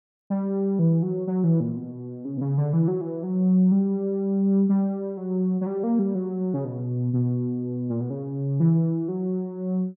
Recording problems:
none

